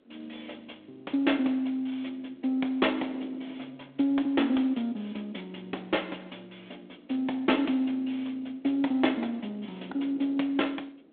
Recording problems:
phone line; 220 Hz to 3.5 kHz, G.726
wind on the microphone; below 480 Hz, SNR 25 dB

